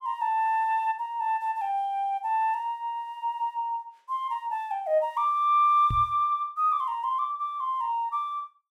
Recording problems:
microphone thump; at 6 s; peak -1 dB vs average level

